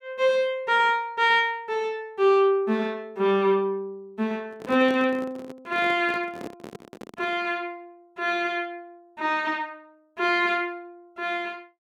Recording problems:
handling noise; from 4.5 to 7.5 s; peak -8 dB vs average level

